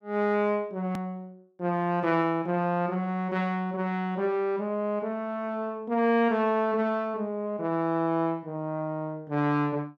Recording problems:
click at an edit; at 1 s

